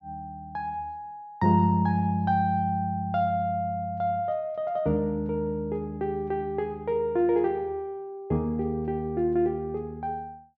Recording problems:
none

